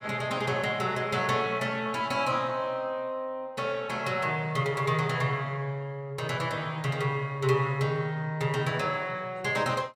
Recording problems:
none

